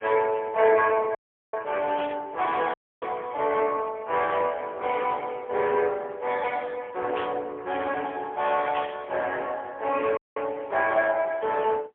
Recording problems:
telephone audio; 340 Hz to 3.3 kHz, AMR-NB, then MP3
audio cutting out; at 1 s, at 2.5 s and at 10 s
static burst; at 2 s, at 7 s and at 9 s; peak -5 dB vs average level

